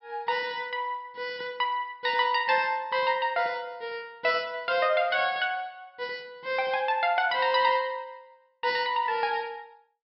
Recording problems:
low-pass filter; nothing above 5.4 kHz

